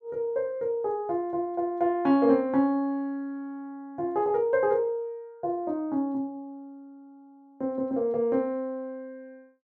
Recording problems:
none

